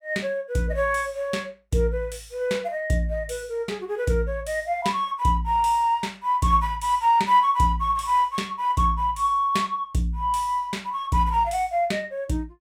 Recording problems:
none

